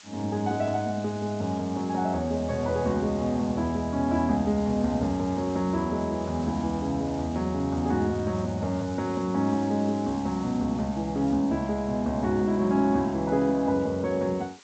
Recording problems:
codec artefacts; G.722, log-spectral distance 5 dB
background hiss; slope +2 dB per octave, SNR 22 dB

